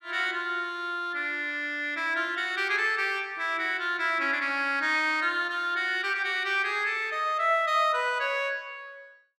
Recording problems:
none

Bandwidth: 14.5 kHz